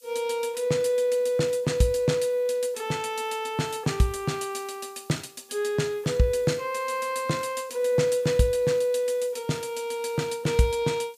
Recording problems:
hiss; SNR 27 dB

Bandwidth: 15 kHz